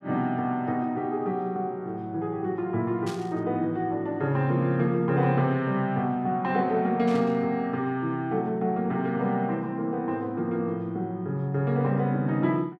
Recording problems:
burst of static; at 3 s and at 7 s; peak -9 dB vs average level

